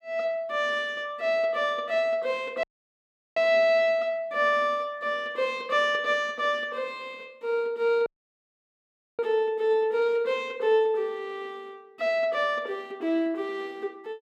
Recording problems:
audio cutting out; at 2.5 s for 0.5 s and at 8 s for 1 s

